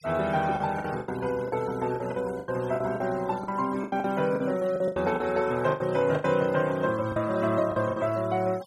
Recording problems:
denoising artefacts; signal-to-artefact ratio 21 dB
lost packets; 13% of the sound replaced, filled with the last packet

